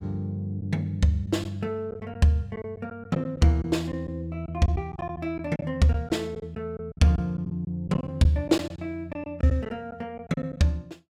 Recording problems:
packet loss; 8% of the sound replaced, filled with silence

